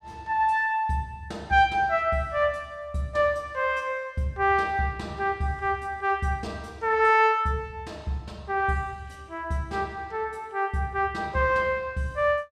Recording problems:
none

